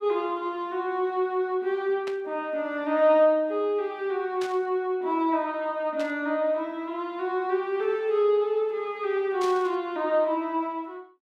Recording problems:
static burst; 4 times, first at 2 s; peak -8 dB vs average level

